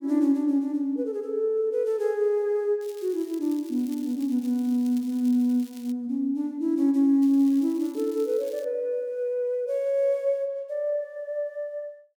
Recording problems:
crackling; from 3 to 6 s and from 7 to 8.5 s; loose cable, SNR 24 dB

